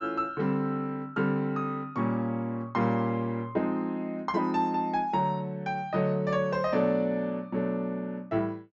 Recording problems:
treble cut off; nothing above 8 kHz

